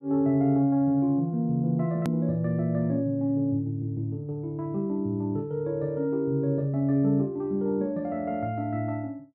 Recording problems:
edit click; at 2 s

